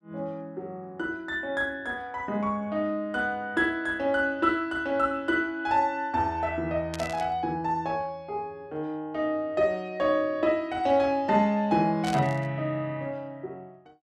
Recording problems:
static burst; at 7 s and at 12 s; peak -5 dB vs average level

